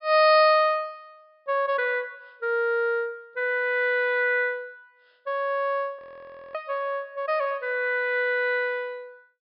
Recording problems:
treble missing; nothing above 5.5 kHz
audio freezing; at 6 s for 0.5 s

